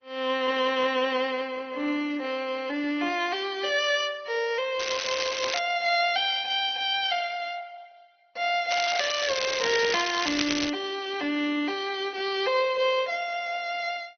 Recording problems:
treble missing; nothing above 5.8 kHz
lossy codec; Opus, log-spectral distance 4 dB
crackling; at 5 s and from 8.5 to 11 s; loose cable, SNR 4 dB

